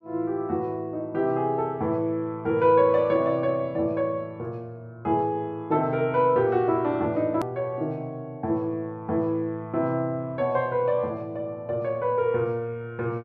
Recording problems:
edit click; at 7.5 s

